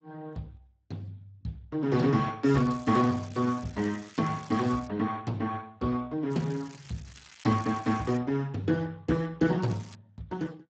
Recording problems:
lossy codec; Speex, log-spectral distance 5 dB, nothing above 7.3 kHz
crackling; from 2.5 to 5 s, from 6.5 to 8 s and at 9.5 s; loose cable, SNR 22 dB

